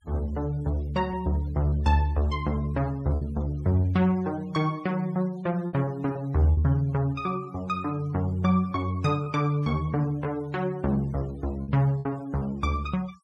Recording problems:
denoising artefacts; signal-to-artefact ratio 26 dB
lost packets; 4% of the sound replaced, filled with repeated pitch periods

